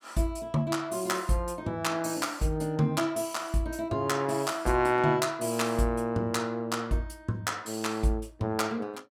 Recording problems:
none

